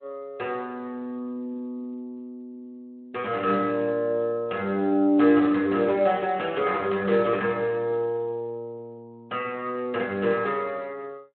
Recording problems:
telephone audio; 220 Hz to 3.2 kHz, Speex

